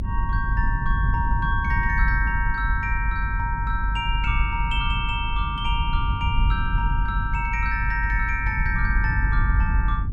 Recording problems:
low-frequency rumble; below 80 Hz, strongest tone 48 Hz, SNR -1 dB

